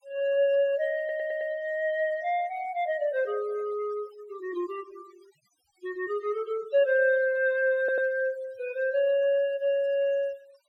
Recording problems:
denoising artefacts; signal-to-artefact ratio 25 dB
stutter; at 1 s and at 8 s

